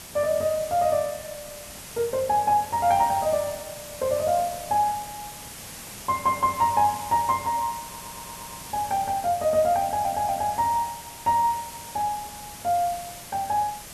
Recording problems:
background hiss; slope -1 dB per octave, SNR 13 dB
audio stuttering; at 8 s and at 10 s

